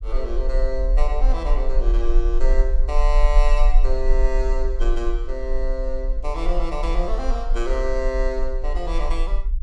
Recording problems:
low-frequency rumble; below 38 Hz, strongest tone 24 Hz, SNR -4 dB

